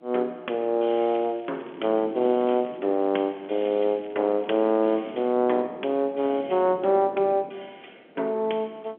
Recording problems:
phone line; 260 Hz to 3.4 kHz, G.711
wind noise; below 460 Hz, SNR 20 dB
crackling; from 1 to 5 s; loose cable, SNR 30 dB

